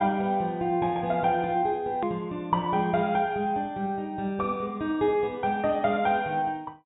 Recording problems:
low-pass filter; nothing above 4 kHz
edit click; at 2 s

